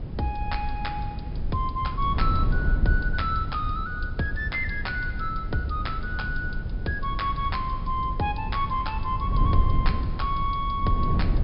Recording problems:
low-pass filter; nothing above 5.5 kHz
hiss; SNR 29 dB
wind noise; below 96 Hz, SNR 1 dB

